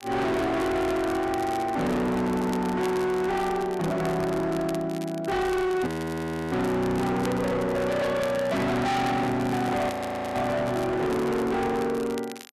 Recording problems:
distorted audio; hard clipping, signal-to-distortion ratio 6 dB
crackling; vinyl, SNR 19 dB
frozen audio; at 6 s for 0.5 s and at 10 s
handling noise; from 9 to 11 s; peak -4 dB vs average level

